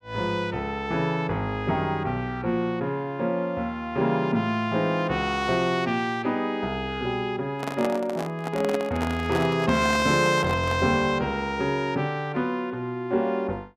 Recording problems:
microphone handling noise; from 7.5 to 11 s; peak -1 dB vs average level

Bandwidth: 15.5 kHz